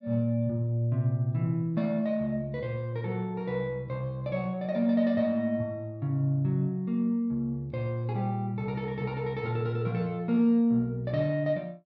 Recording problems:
none

